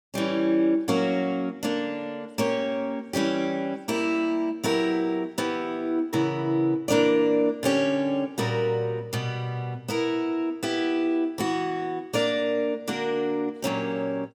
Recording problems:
none

